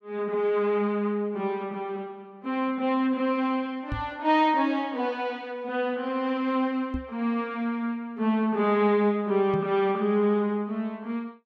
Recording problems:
microphone bump; at 4 s, at 7 s and at 9.5 s; peak -2 dB vs average level

